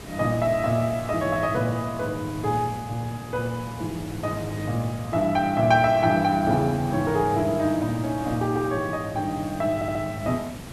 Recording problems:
hiss; slope -5 dB per octave, SNR 14 dB
audio stuttering; at 10 s

